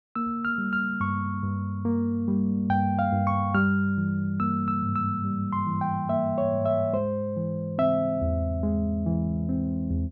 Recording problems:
treble missing; nothing above 7 kHz

